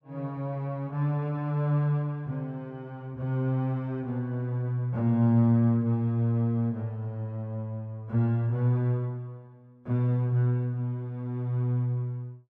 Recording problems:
none

